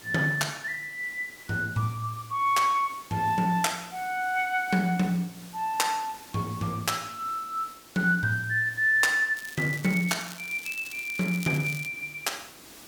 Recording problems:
hiss; SNR 20 dB
crackle; from 9.5 to 12 s; loose cable, SNR 16 dB

